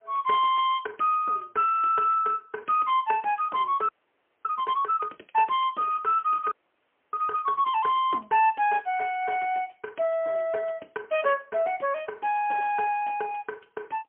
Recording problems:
phone line; 260 Hz to 3.3 kHz, AMR-NB, then MP3
audio freezing; at 4 s for 0.5 s and at 6.5 s for 0.5 s

